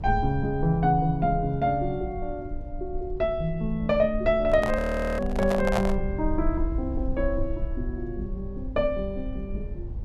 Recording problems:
electrical hum; 50 Hz, harmonics up to 550 Hz, SNR 20 dB
rumble; below 62 Hz, SNR 9 dB
handling noise; from 4.5 to 6 s; peak +3 dB vs average level
audio freezing; at 5 s

